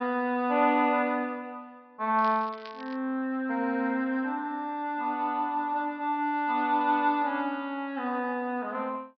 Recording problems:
treble missing; nothing above 5.5 kHz
crackling; at 2 s; loose cable, SNR 23 dB

